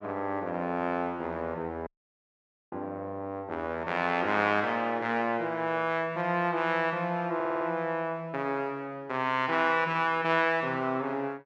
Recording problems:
dropout; at 2 s for 1 s
stutter; at 7.5 s

